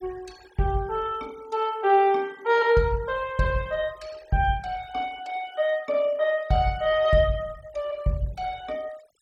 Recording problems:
noise reduction artefacts; signal-to-artefact ratio 25 dB

